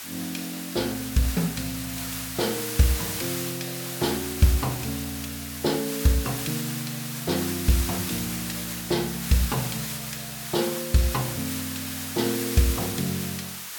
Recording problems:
background hiss; SNR 4 dB

